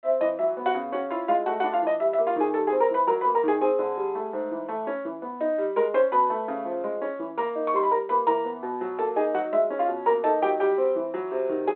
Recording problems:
telephone audio; 320 Hz to 3.7 kHz, G.726

